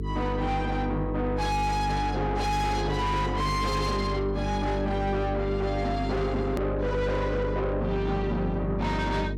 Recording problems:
distortion; soft clipping, signal-to-distortion ratio 7 dB
hum; 50 Hz, harmonics up to 450 Hz, SNR 4 dB
click at an edit; at 6.5 s

